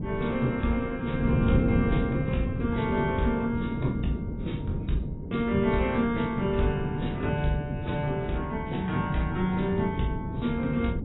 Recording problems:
lossy compression; AAC, log-spectral distance 2 dB, nothing above 3.8 kHz
wind noise; below 250 Hz, SNR 4 dB

